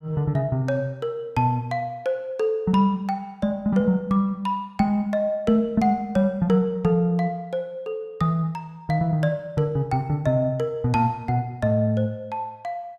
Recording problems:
none

